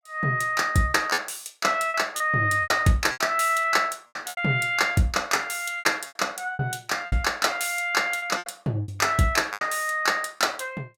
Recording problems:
packet loss; 10% of the sound replaced, filled with repeated pitch periods

